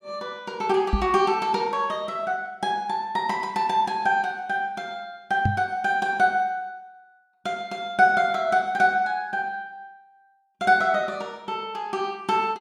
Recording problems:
microphone bump; at 1 s and at 5.5 s; peak +4 dB vs average level

